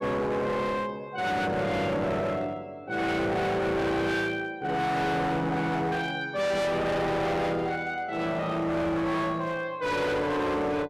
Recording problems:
distorted audio; hard clipping, uneven, signal-to-distortion ratio 6 dB

